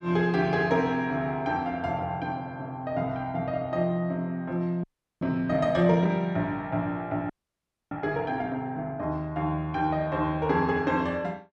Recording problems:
frozen audio; at 5 s and at 7.5 s for 0.5 s

